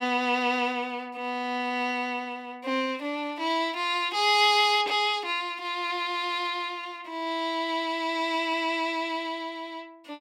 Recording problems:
none

